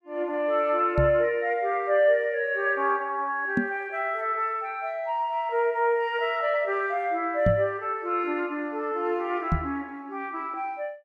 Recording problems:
knock on the microphone; 4 times, first at 1 s; peak +5 dB vs average level

